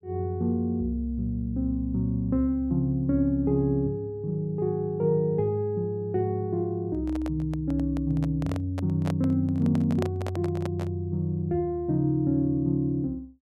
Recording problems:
microphone handling noise; from 7 to 11 s; peak -2 dB vs average level

